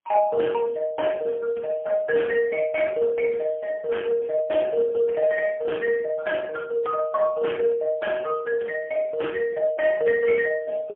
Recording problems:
phone line; 220 Hz to 2.6 kHz, AMR-NB, then MP3

